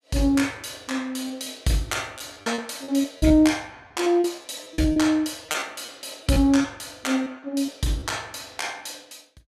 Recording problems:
lost packets; 8% of the sound replaced, filled with repeated pitch periods

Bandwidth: 14.5 kHz